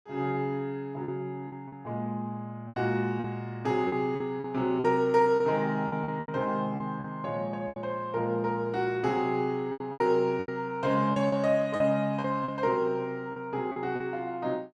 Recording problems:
packet loss; 9% of the sound replaced, filled with repeated pitch periods

